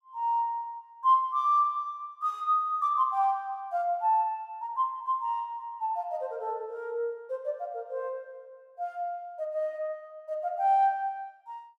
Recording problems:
none

